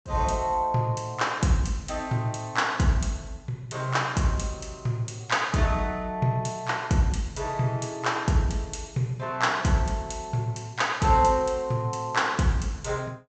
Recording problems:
treble missing; nothing above 8 kHz

